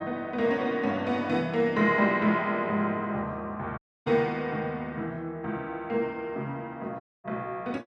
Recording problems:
audio cutting out; at 4 s and at 7 s

